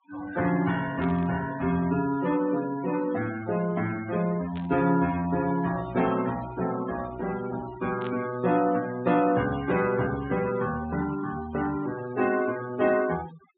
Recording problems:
treble missing; nothing above 4 kHz
denoising artefacts; signal-to-artefact ratio 13 dB
burst of static; at 1 s, at 4.5 s and at 8 s; peak -11 dB vs average level

